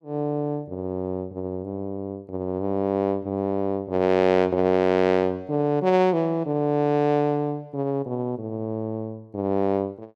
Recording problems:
none

